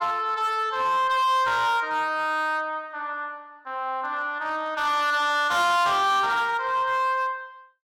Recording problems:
distortion; hard clipping, uneven, signal-to-distortion ratio 11 dB

